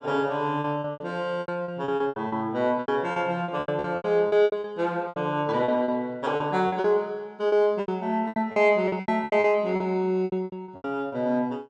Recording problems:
packet loss; 18% of the sound replaced, filled with repeated pitch periods

